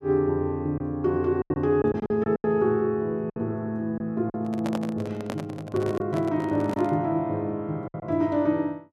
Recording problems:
packet loss; 6% of the sound replaced, filled with silence
microphone handling noise; from 4.5 to 7 s; peak -2 dB vs average level

